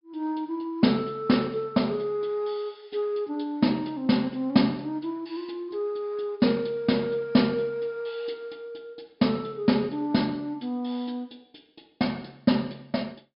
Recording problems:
treble cut off; nothing above 5.5 kHz

